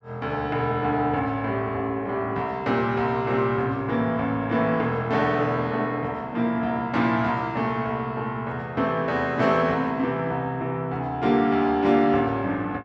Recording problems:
none

